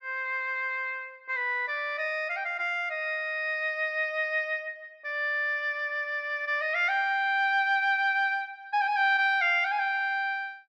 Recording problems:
none

